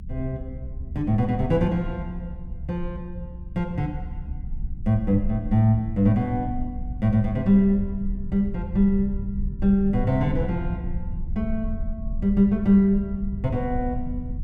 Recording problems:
rumble; below 70 Hz, SNR 10 dB

